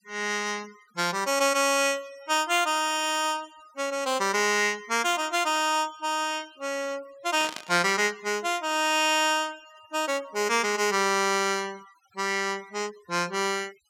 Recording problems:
noise reduction artefacts; signal-to-artefact ratio 23 dB
burst of static; at 7.5 s; peak -6 dB vs average level

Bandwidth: 16.5 kHz